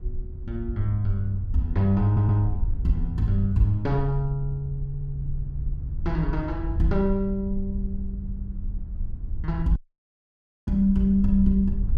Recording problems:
wind noise; below 68 Hz, SNR 7 dB
audio stuttering; at 2 s and at 5 s
audio cutting out; at 10 s for 1 s

